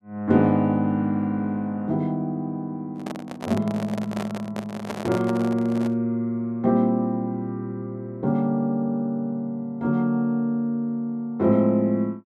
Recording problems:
microphone handling noise; from 3 to 6 s; peak -3 dB vs average level

